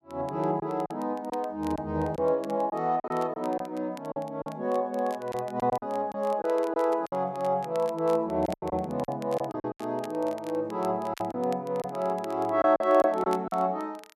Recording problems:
crackling; vinyl, SNR 24 dB
lost packets; 8% of the sound replaced, filled with silence

